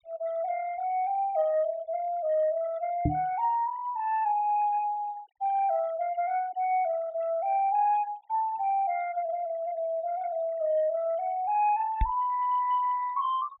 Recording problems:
treble missing; nothing above 4 kHz
noise reduction artefacts; signal-to-artefact ratio 23 dB
microphone thump; at 3 s and at 12 s; peak +4 dB vs average level

